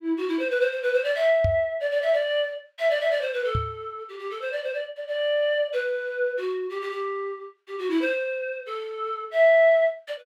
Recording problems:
microphone thump; at 1.5 s and at 3.5 s; peak +2 dB vs average level

